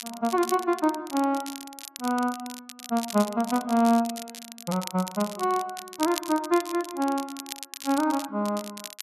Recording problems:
crackle; vinyl, SNR 12 dB

